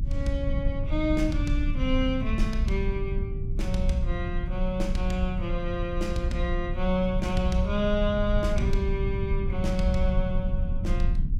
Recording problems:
rumble; below 80 Hz, strongest tone 26 Hz, SNR 1 dB

